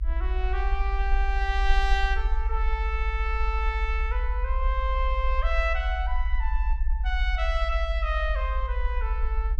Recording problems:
low-frequency rumble; below 58 Hz, SNR -2 dB

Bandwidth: 14.5 kHz